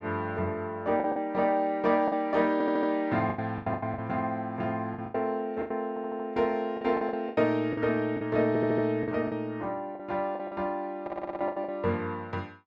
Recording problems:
lost packets; 11% of the sound replaced, filled with the last packet
stutter; 4 times, first at 2.5 s

